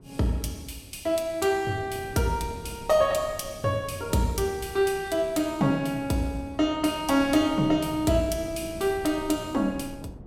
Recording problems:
wind on the microphone; below 320 Hz, SNR 18 dB

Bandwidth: 16 kHz